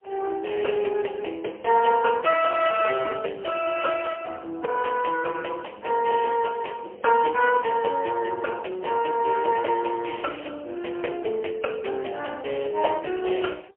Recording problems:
phone line; 340 Hz to 2.5 kHz, AMR-NB, then MP3

